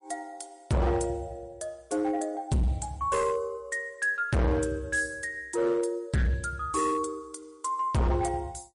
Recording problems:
codec artefacts; MP3, log-spectral distance 3 dB, nothing above 10.4 kHz
distortion; hard clipping, signal-to-distortion ratio 7 dB

